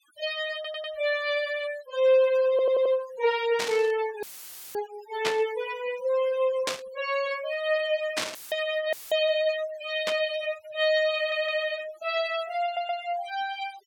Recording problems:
denoising artefacts; signal-to-artefact ratio 16 dB
audio stuttering; 4 times, first at 0.5 s
static burst; 5 times, first at 3.5 s; peak +3 dB vs average level
dropout; at 4 s for 0.5 s, at 8.5 s and at 9 s; filled with static

